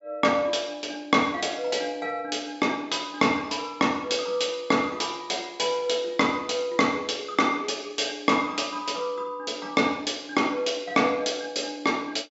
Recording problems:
low-pass filter; nothing above 8 kHz

